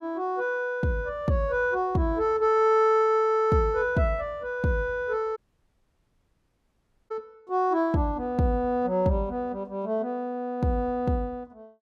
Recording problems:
dropout; at 5.5 s for 1.5 s

